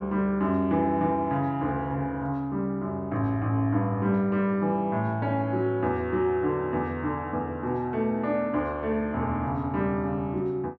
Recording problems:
treble missing; nothing above 8 kHz

